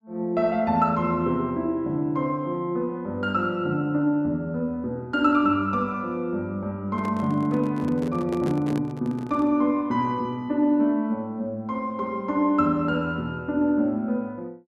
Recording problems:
handling noise; from 7 to 9.5 s; peak -5 dB vs average level

